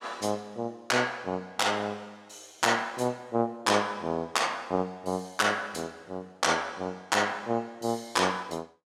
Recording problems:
none

